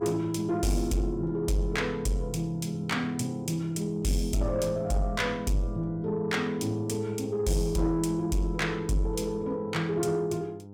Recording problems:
distorted audio; soft clipping, signal-to-distortion ratio 11 dB
mains hum; 50 Hz, harmonics up to 900 Hz, SNR 18 dB

